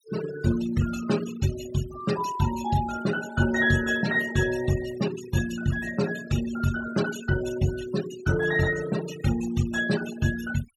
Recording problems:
denoising artefacts; signal-to-artefact ratio 12 dB

